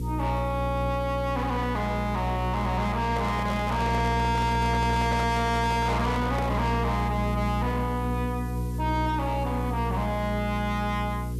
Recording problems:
distorted audio; soft clipping, signal-to-distortion ratio 6 dB
hum; 60 Hz, harmonics up to 480 Hz, SNR 3 dB
hiss; slope +4 dB per octave, SNR 25 dB
microphone handling noise; from 3 to 6.5 s; peak +2 dB vs average level

